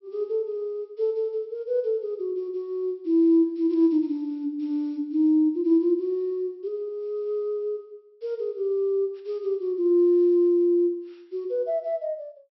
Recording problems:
treble missing; nothing above 5.6 kHz

